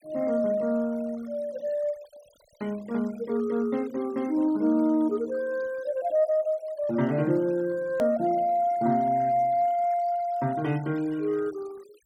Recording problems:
noise reduction artefacts; signal-to-artefact ratio 26 dB
hard cut with a click; at 8 s

